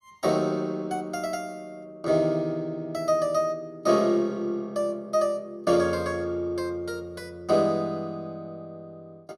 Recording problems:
none

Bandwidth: 15 kHz